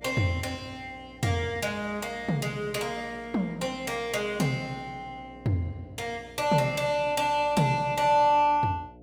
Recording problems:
electrical hum; 60 Hz, harmonics up to 720 Hz, SNR 23 dB

